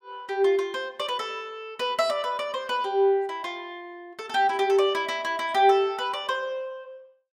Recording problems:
none

